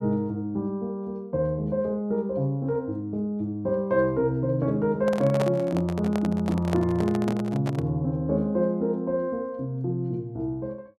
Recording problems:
handling noise; from 5 to 8 s; peak +1 dB vs average level

